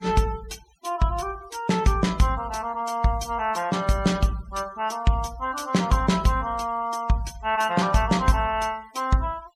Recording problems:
denoising artefacts; signal-to-artefact ratio 23 dB

